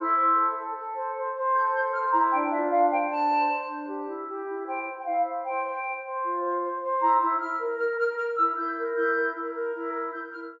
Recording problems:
treble missing; nothing above 8 kHz

